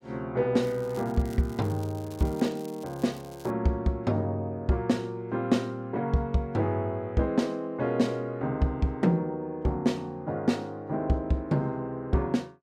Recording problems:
crackling; from 0.5 to 3.5 s; loose cable, SNR 23 dB

